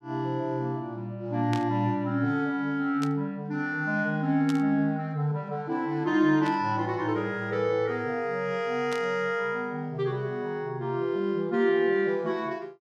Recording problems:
static burst; 5 times, first at 1.5 s; peak -5 dB vs average level

